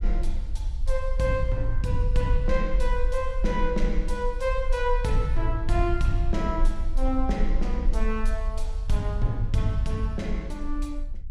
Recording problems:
rumble; below 44 Hz, strongest tone 20 Hz, SNR 1 dB

